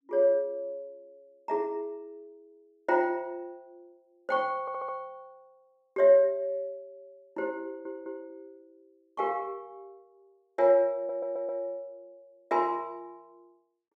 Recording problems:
stutter; at 4.5 s, at 7.5 s and at 11 s

